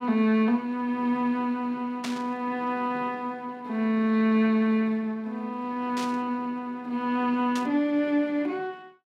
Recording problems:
burst of static; at 2 s, at 6 s and at 7.5 s; peak -4 dB vs average level

